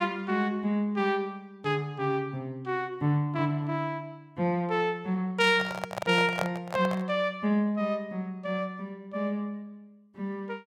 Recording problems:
microphone handling noise; from 5.5 to 7 s; peak +2 dB vs average level

